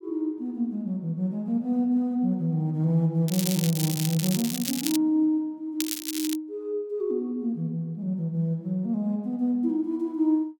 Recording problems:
crackling; from 3.5 to 5 s and at 6 s; loose cable, SNR 5 dB

